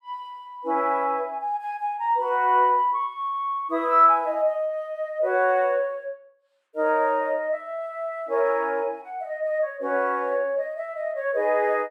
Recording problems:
none

